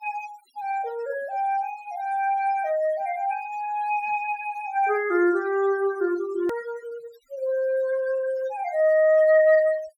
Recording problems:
denoising artefacts; signal-to-artefact ratio 21 dB
click at an edit; at 6.5 s

